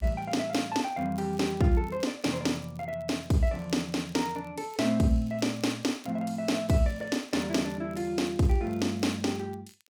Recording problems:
crackling; vinyl, SNR 28 dB

